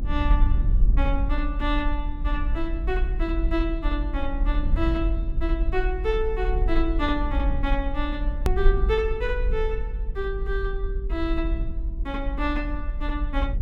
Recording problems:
low-frequency rumble; below 50 Hz, SNR -2 dB
click at an edit; at 8.5 s

